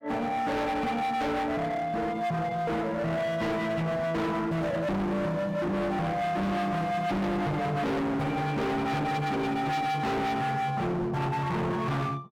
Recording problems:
distorted audio; hard clipping, signal-to-distortion ratio 6 dB

